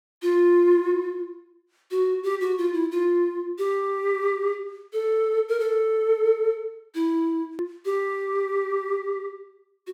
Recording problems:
edit click; at 7.5 s

